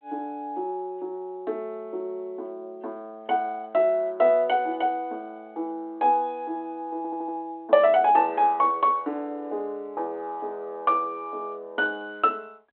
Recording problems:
phone line; 280 Hz to 3.3 kHz, G.726
stutter; at 7 s

